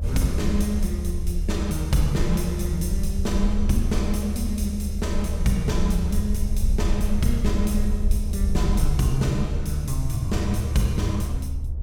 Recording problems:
rumble; below 74 Hz, SNR 1 dB
wind noise; below 170 Hz, SNR 20 dB

